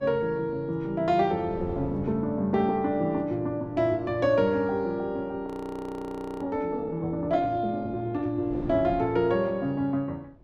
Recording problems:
wind on the microphone; below 380 Hz, SNR 19 dB
audio freezing; at 5.5 s for 1 s

